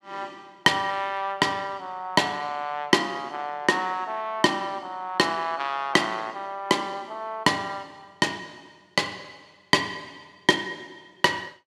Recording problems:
none

